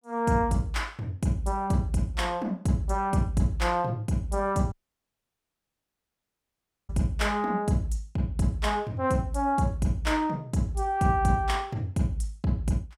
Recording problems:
audio cutting out; at 4.5 s for 2 s

